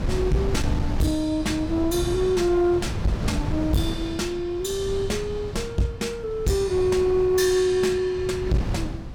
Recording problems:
distorted audio; hard clipping, signal-to-distortion ratio 11 dB
wind on the microphone; below 190 Hz, SNR 7 dB

